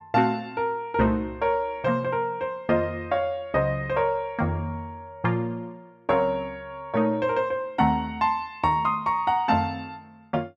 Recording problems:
none

